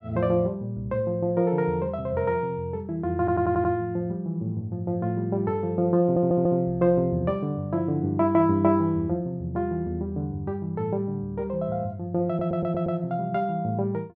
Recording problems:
stutter; at 3 s, at 6 s and at 12 s

